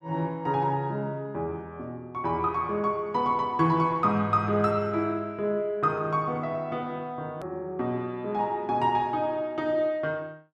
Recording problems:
hard cut with a click; at 7.5 s

